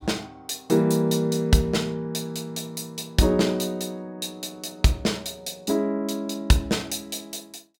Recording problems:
none

